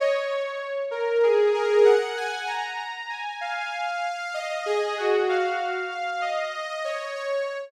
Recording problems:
none

